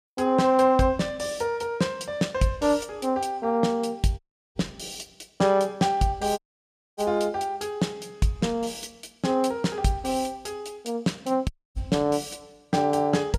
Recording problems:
dropout; at 4 s, at 6.5 s for 0.5 s and at 12 s

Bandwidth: 15.5 kHz